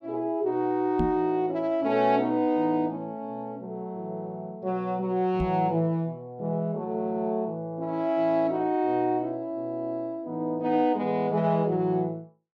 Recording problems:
knock on the microphone; at 1 s and at 5.5 s; peak +2 dB vs average level

